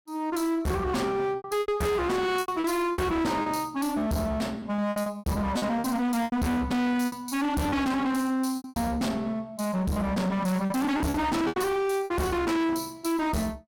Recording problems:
distortion; hard clipping, uneven, signal-to-distortion ratio 6 dB
lost packets; 9% of the sound replaced, filled with repeated pitch periods

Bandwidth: 17 kHz